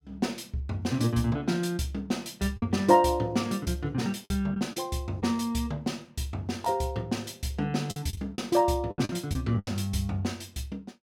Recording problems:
lost packets; 5% of the sound replaced, filled with the last packet

